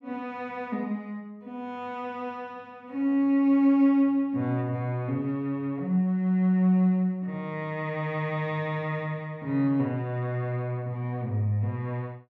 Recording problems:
none

